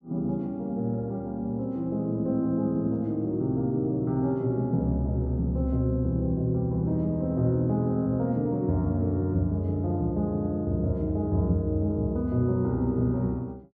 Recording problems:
none

